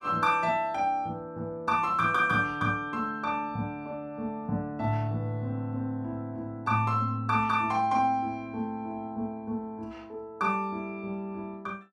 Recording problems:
none

